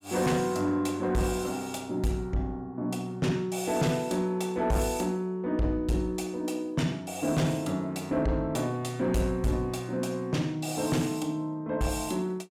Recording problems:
distortion; soft clipping, signal-to-distortion ratio 11 dB

